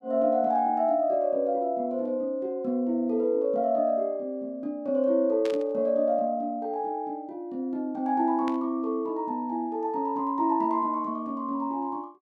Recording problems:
burst of static; at 5.5 s and at 8.5 s; peak -9 dB vs average level

